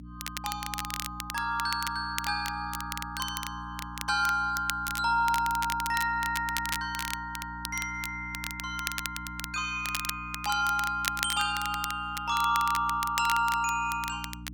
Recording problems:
electrical hum; 60 Hz, harmonics up to 300 Hz, SNR 14 dB
crackling; vinyl, SNR 8 dB

